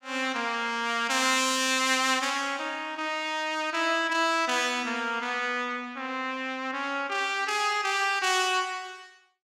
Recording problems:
none

